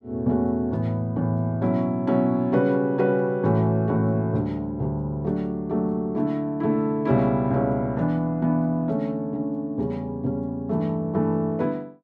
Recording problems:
none

